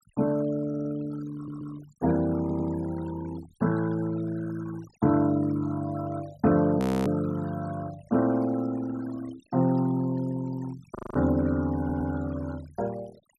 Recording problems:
denoising artefacts; signal-to-artefact ratio 19 dB
audio stuttering; 4 times, first at 0.5 s
audio freezing; at 7 s and at 11 s

